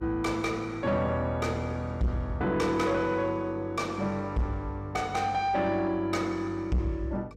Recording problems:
distortion; soft clipping, signal-to-distortion ratio 11 dB
electrical hum; 50 Hz, harmonics up to 500 Hz, SNR 21 dB

